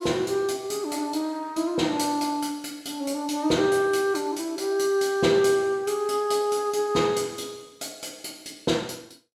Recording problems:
none

